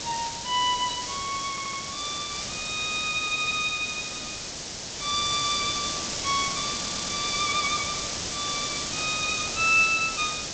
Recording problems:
lossy codec; G.722, log-spectral distance 19 dB
background hiss; SNR 3 dB
stutter; at 1.5 s and at 7 s
burst of static; at 9 s; peak -11 dB vs average level

